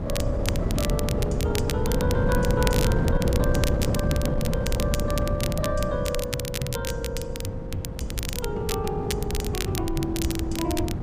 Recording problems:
wind noise; below 230 Hz, SNR -2 dB
crackle; vinyl, SNR 5 dB

